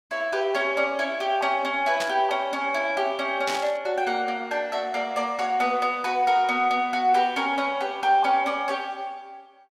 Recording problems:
burst of static; at 2 s and at 3.5 s; peak -2 dB vs average level

